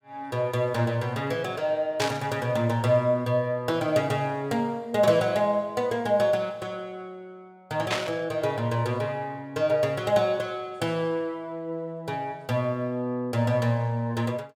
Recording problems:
static burst; at 2 s and at 8 s; peak +3 dB vs average level

